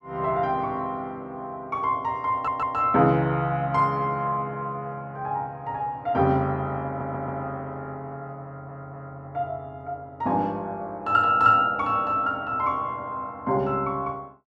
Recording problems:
stutter; at 2.5 s, at 7 s and at 8.5 s

